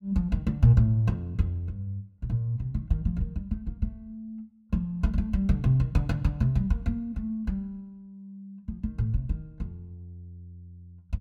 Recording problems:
none

